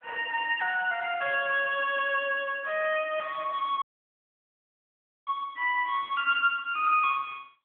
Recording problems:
telephone audio; 260 Hz to 3.3 kHz, AMR-NB
audio cutting out; at 4 s for 1.5 s

